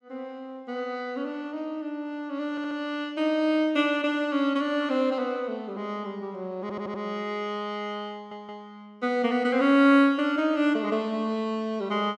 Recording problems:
stutter; at 2.5 s, at 6.5 s and at 8 s

